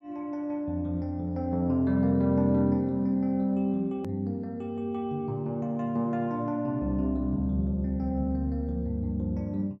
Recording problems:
edit click; at 4 s

